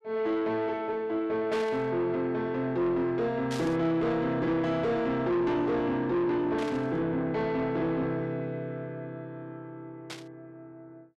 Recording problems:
distorted audio; soft clipping, signal-to-distortion ratio 11 dB
burst of static; 4 times, first at 1.5 s; peak -7 dB vs average level

